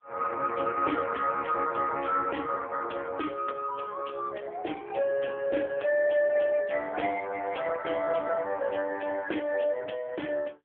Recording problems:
phone line; 240 Hz to 2.5 kHz, AMR-NB

